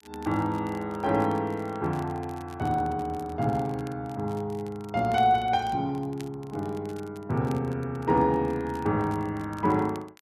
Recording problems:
crackling; vinyl, SNR 25 dB

